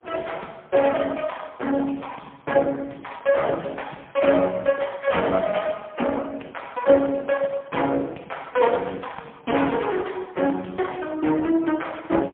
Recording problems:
telephone audio; 240 Hz to 3.4 kHz, AMR-NB, then MP3

